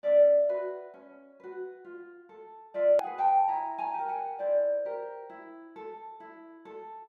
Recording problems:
edit click; at 3 s

